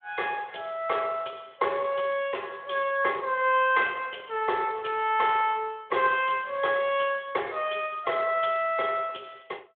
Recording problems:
telephone audio; 340 Hz to 3.5 kHz, Speex

